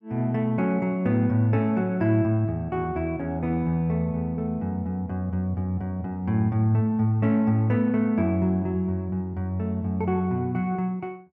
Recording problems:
none

